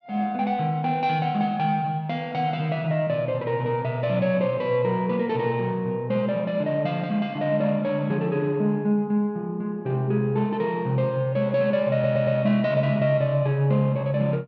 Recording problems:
stutter; at 12 s

